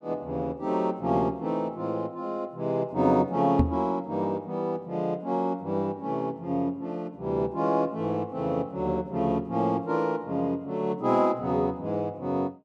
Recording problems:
microphone bump; at 3.5 s; peak +8 dB vs average level

